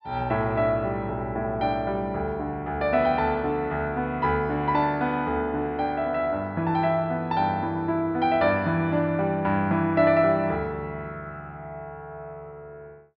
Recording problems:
treble missing; nothing above 5.5 kHz

